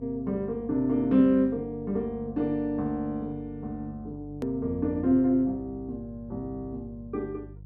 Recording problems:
hum; 50 Hz, harmonics up to 350 Hz, SNR 18 dB
hard cut with a click; at 4.5 s

